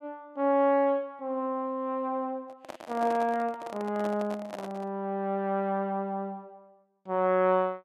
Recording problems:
microphone handling noise; from 2.5 to 5 s; peak -7 dB vs average level

